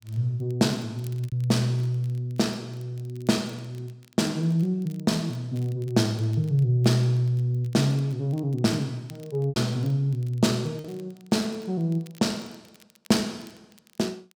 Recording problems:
crackle; vinyl, SNR 29 dB
lost packets; 1.6% of the sound replaced, filled with repeated pitch periods

